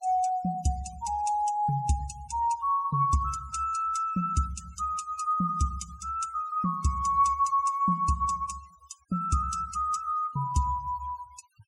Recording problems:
denoising artefacts; signal-to-artefact ratio 21 dB

